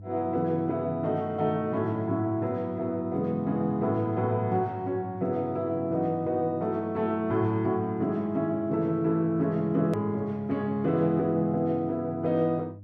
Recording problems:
electrical hum; 50 Hz, harmonics up to 500 Hz, SNR 18 dB
hard cut with a click; at 10 s

